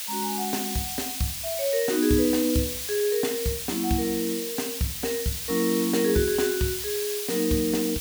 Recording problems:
hiss; slope +4 dB per octave, SNR 4 dB

